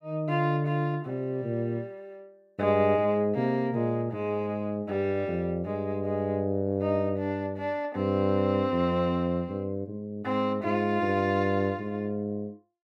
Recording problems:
none

